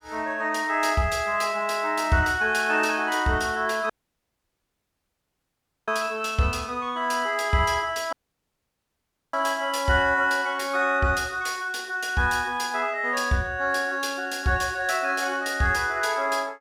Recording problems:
audio cutting out; at 4 s for 2 s and at 8 s for 1 s

